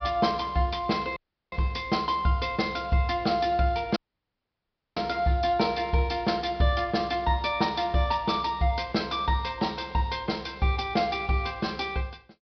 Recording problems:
treble missing; nothing above 5.5 kHz
dropout; at 1 s and at 4 s for 1 s

